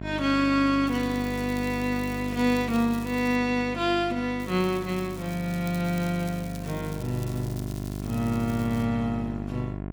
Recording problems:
electrical hum; 50 Hz, harmonics up to 1.1 kHz, SNR 9 dB
crackling; from 1 to 3.5 s, from 4.5 to 6.5 s and from 6.5 to 9 s; loose cable, SNR 19 dB

